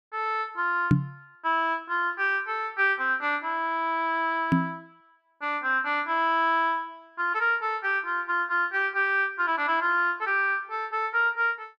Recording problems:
microphone bump; at 1 s and at 4.5 s; peak +8 dB vs average level

